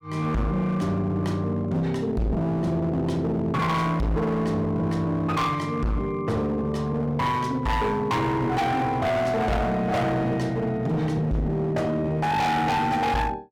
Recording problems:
distortion; hard clipping, signal-to-distortion ratio 6 dB

